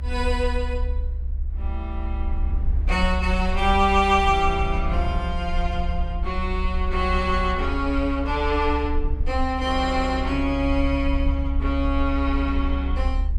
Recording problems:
rumble; below 68 Hz, SNR 3 dB

